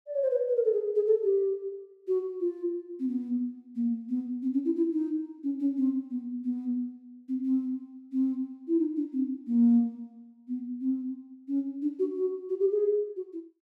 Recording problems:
none

